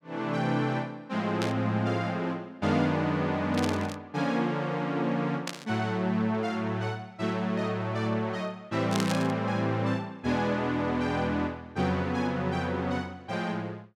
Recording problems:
static burst; 4 times, first at 1.5 s; peak 0 dB vs average level

